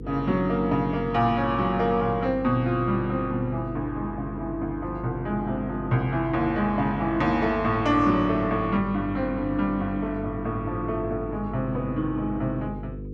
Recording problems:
hum; 50 Hz, harmonics up to 500 Hz, SNR 11 dB

